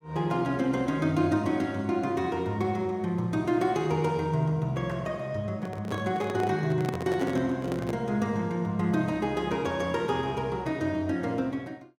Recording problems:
handling noise; from 5.5 to 8 s; peak -2 dB vs average level

